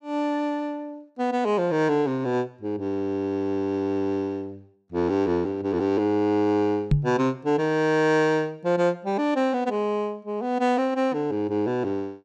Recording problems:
microphone bump; at 7 s; peak +7 dB vs average level

